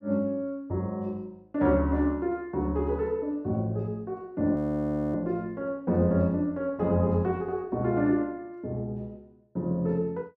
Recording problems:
audio freezing; at 4.5 s for 0.5 s

